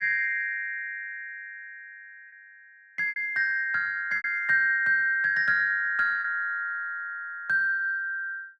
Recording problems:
packet loss; 3% of the sound replaced, filled with repeated pitch periods

